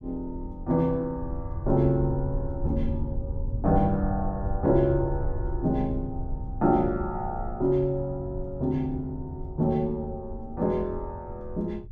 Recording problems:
rumble; below 82 Hz, SNR 8 dB

